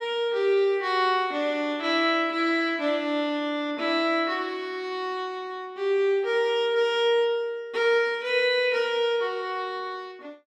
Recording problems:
none

